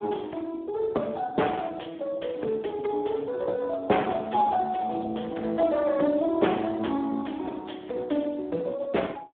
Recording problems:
phone line; 240 Hz to 3.8 kHz, Speex

